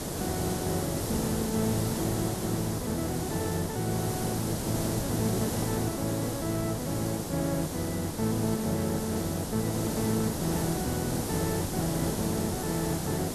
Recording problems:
background hiss; SNR 1 dB

